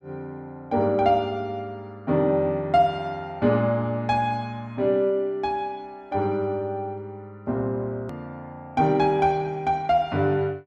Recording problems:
hard cut with a click; at 8 s

